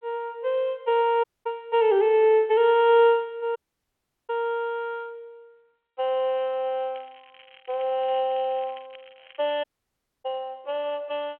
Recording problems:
phone line; 340 Hz to 3.3 kHz, G.726
audio cutting out; at 1 s, at 3.5 s for 0.5 s and at 9.5 s for 0.5 s
crackling; from 7 to 9.5 s; loose cable, SNR 27 dB

